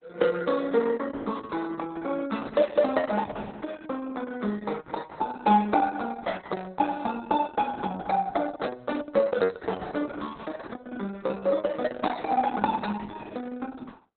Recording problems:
lossy compression; Opus, log-spectral distance 4 dB, nothing above 4 kHz

